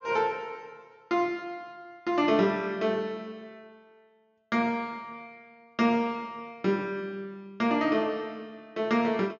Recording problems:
low-pass filter; nothing above 6.8 kHz

